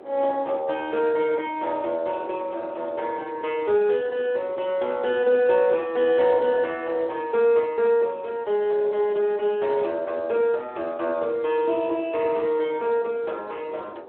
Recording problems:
telephone audio; 300 Hz to 3.5 kHz, Speex
wind on the microphone; below 680 Hz, SNR 21 dB

